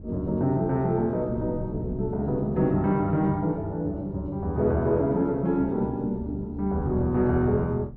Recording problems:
wind noise; below 190 Hz, SNR 16 dB

